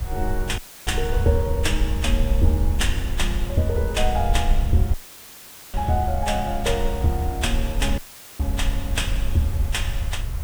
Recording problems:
hiss; slope -4 dB per octave, SNR 15 dB
low-frequency rumble; below 66 Hz, SNR 2 dB
wind noise; below 130 Hz, SNR 14 dB
audio cutting out; at 0.5 s, at 5 s for 1 s and at 8 s; filled with static

